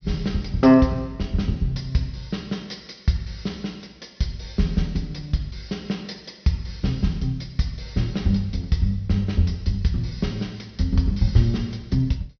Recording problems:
low-pass filter; nothing above 6.2 kHz

